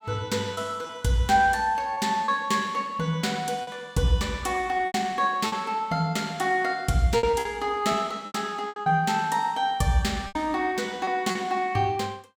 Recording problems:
packet loss; 7% of the sound replaced, filled with repeated pitch periods

